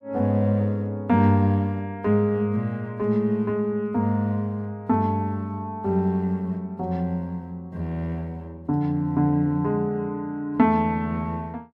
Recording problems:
none

